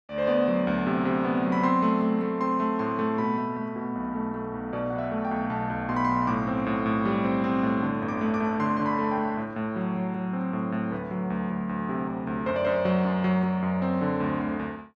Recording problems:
none

